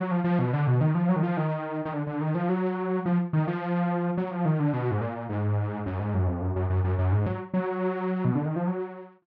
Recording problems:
none

